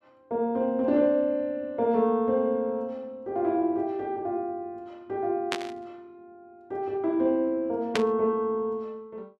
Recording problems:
static burst; at 5.5 s and at 8 s; peak +3 dB vs average level

